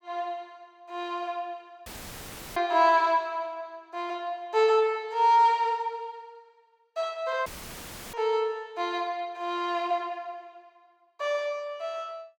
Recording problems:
audio cutting out; at 2 s for 0.5 s and at 7.5 s for 0.5 s; filled with static

